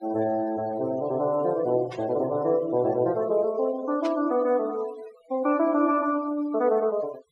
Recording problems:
noise reduction artefacts; signal-to-artefact ratio 21 dB
static burst; at 2 s and at 4 s; peak -10 dB vs average level

